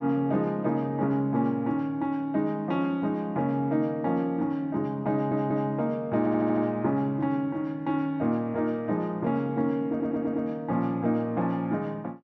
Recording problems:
audio stuttering; at 5 s, at 6 s and at 10 s

